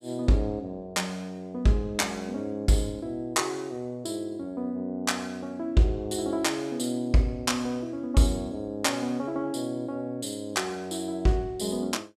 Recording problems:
none

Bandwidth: 14.5 kHz